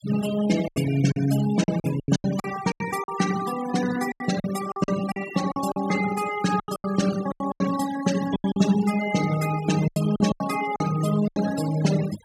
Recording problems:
noise reduction artefacts; signal-to-artefact ratio 12 dB
packet loss; 13% of the sound replaced, filled with silence

